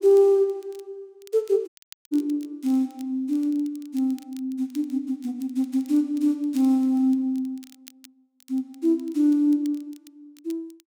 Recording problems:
crackle; vinyl, SNR 28 dB
dropout; at 1.5 s

